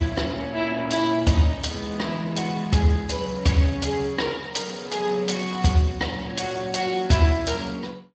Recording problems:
lossy codec; MP3, then Speex, log-spectral distance 5 dB, nothing above 7.6 kHz

